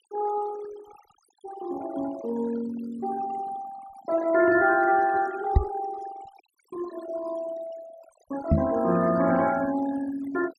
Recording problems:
denoising artefacts; signal-to-artefact ratio 17 dB
knock on the microphone; at 5.5 s and at 8.5 s; peak +9 dB vs average level

